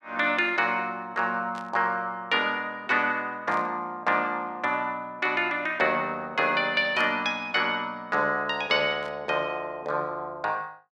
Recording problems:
static burst; 4 times, first at 1.5 s; peak -15 dB vs average level

